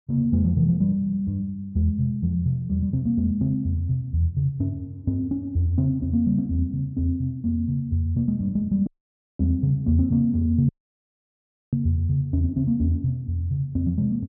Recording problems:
audio cutting out; at 9 s for 0.5 s and at 11 s for 1 s

